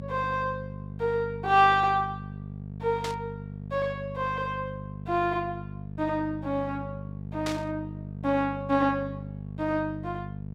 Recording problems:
hum; 50 Hz, harmonics up to 500 Hz, SNR 10 dB
burst of static; at 3 s and at 7.5 s; peak -2 dB vs average level

